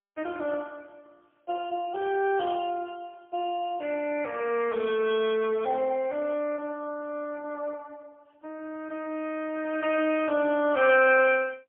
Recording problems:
phone line; 320 Hz to 3.2 kHz, AMR-NB, then MP3

